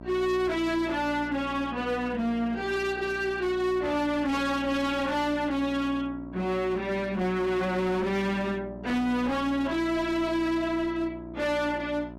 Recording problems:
distorted audio; hard clipping, signal-to-distortion ratio 6 dB
hum; 60 Hz, harmonics up to 1.3 kHz, SNR 15 dB

